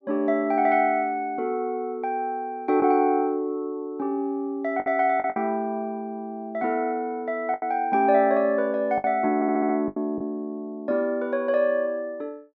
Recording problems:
packet loss; 3% of the sound replaced, filled with the last packet
audio stuttering; at 9.5 s

